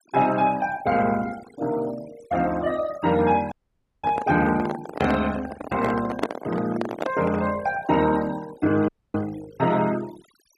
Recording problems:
denoising artefacts; signal-to-artefact ratio 17 dB
handling noise; from 3.5 to 7.5 s; peak +4 dB vs average level
dropout; at 3.5 s for 0.5 s and at 9 s

